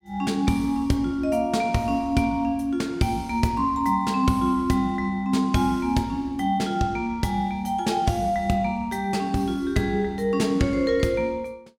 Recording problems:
none

